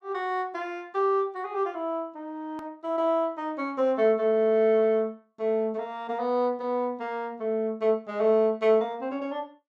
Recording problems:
click at an edit; at 2.5 s

